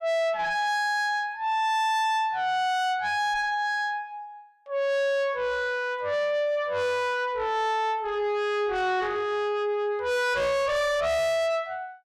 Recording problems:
distortion; soft clipping, signal-to-distortion ratio 6 dB

